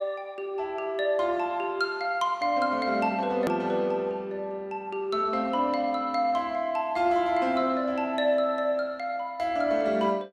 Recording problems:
hard cut with a click; at 3.5 s

